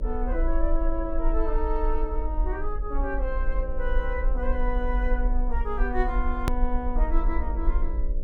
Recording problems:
hum; 60 Hz, harmonics up to 600 Hz, SNR 12 dB
rumble; below 44 Hz, strongest tone 20 Hz, SNR -2 dB
hard cut with a click; at 6.5 s

